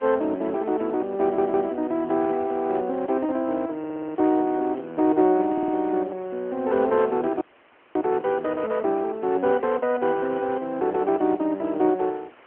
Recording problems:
telephone audio; 240 Hz to 3.1 kHz, AMR-NB
background hiss; SNR 27 dB
audio stuttering; at 1 s, at 4 s and at 5.5 s
dropout; at 7.5 s for 0.5 s

